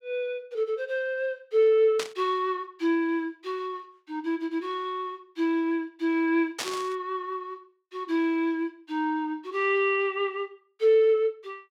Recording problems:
burst of static; at 2 s and at 6.5 s; peak 0 dB vs average level

